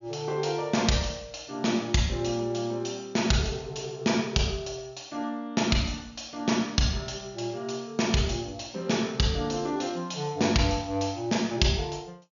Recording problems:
treble missing; nothing above 7 kHz

